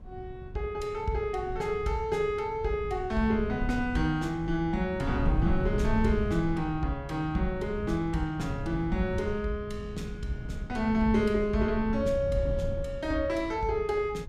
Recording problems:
wind noise; below 120 Hz, SNR 8 dB

